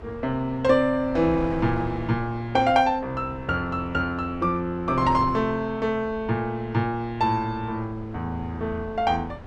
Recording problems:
wind on the microphone; below 590 Hz, SNR 15 dB

